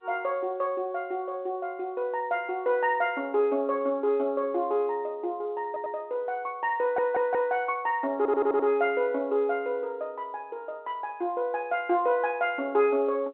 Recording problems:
telephone audio; 300 Hz to 3.3 kHz, G.711
stutter; at 5.5 s, at 7 s and at 8 s

